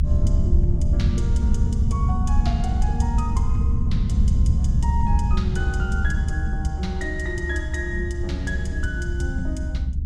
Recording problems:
low-frequency rumble; below 94 Hz, SNR -7 dB

